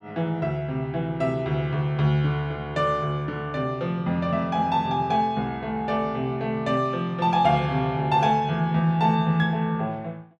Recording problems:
none

